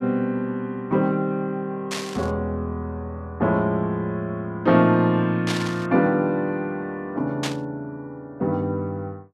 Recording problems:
burst of static; at 2 s, at 5.5 s and at 7.5 s; peak 0 dB vs average level

